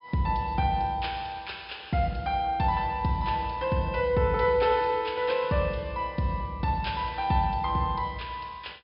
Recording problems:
low-pass filter; nothing above 5.5 kHz

